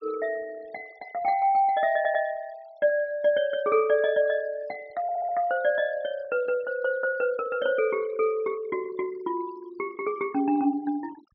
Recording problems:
treble missing; nothing above 5.5 kHz
noise reduction artefacts; signal-to-artefact ratio 25 dB
stutter; at 2 s and at 5 s

